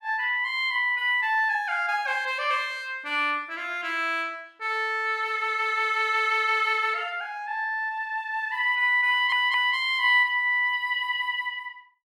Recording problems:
audio stuttering; at 9 s

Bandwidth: 14.5 kHz